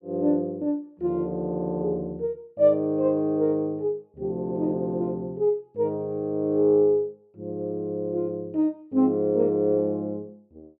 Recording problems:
none

